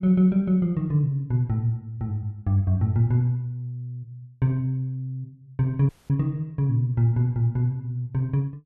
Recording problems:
dropout; at 6 s

